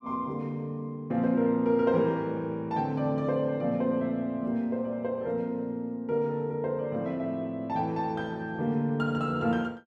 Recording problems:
none

